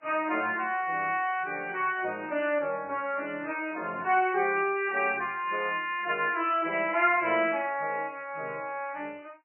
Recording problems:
lossy compression; MP3, log-spectral distance 3 dB, nothing above 2.4 kHz

